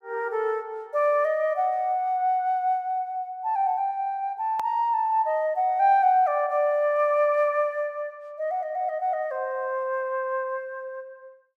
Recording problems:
click at an edit; at 4.5 s

